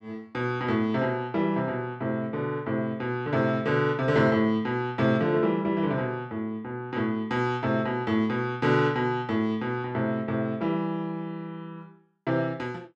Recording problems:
none

